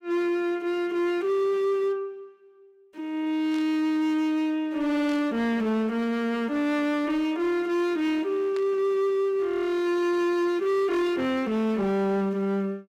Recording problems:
distortion; hard clipping, signal-to-distortion ratio 10 dB
static burst; at 3.5 s, at 5 s and at 8.5 s; peak -13 dB vs average level

